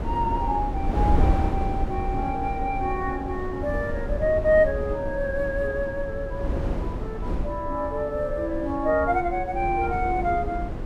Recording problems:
wind on the microphone; below 220 Hz, SNR 4 dB

